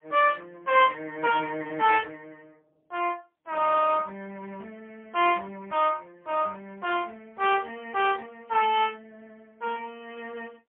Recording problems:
phone line; 260 Hz to 3.4 kHz, AMR-NB, then MP3

